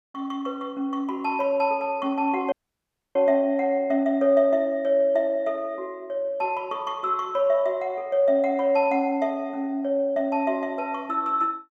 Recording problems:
dropout; at 2.5 s for 0.5 s

